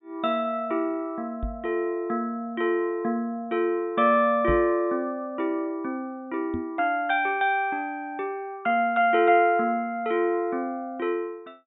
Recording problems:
treble missing; nothing above 4 kHz
microphone thump; at 1.5 s, at 4.5 s and at 6.5 s; peak -1 dB vs average level

